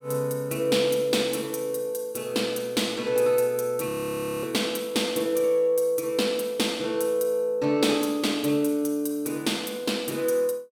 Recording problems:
audio freezing; at 4 s for 0.5 s

